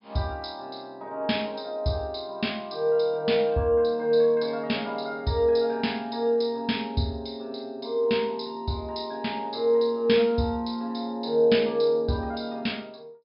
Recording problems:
treble cut off; nothing above 5.5 kHz

